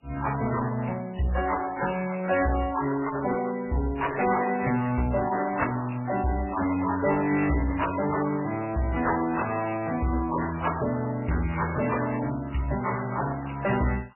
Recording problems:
lossy codec; MP3, then MP3, log-spectral distance 6 dB, nothing above 2.7 kHz
distortion; hard clipping, uneven, signal-to-distortion ratio 9 dB

